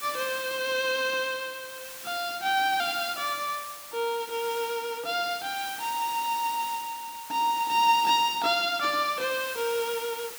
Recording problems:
background hiss; slope +1 dB per octave, SNR 12 dB

